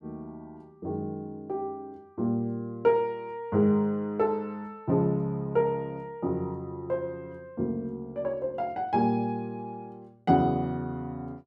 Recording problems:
none

